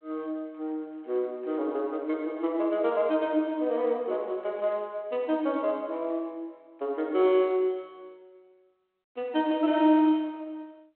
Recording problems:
phone line; 260 Hz to 3.3 kHz, G.726

